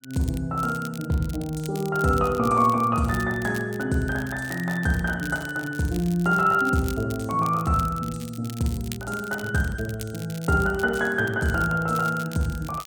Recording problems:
crackle; vinyl, SNR 18 dB

